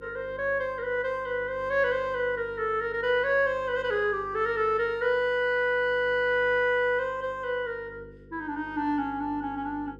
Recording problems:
electrical hum; 50 Hz, harmonics up to 500 Hz, SNR 22 dB

